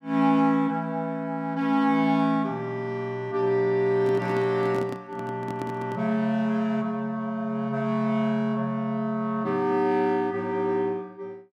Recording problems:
handling noise; from 4 to 6 s; peak -5 dB vs average level

